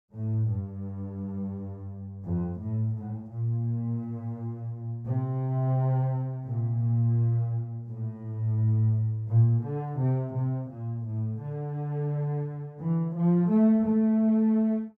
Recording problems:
none

